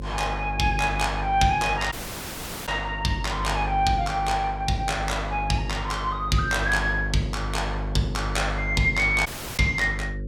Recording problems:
hum; 50 Hz, harmonics up to 550 Hz, SNR 7 dB
dropout; at 2 s for 1 s and at 9.5 s

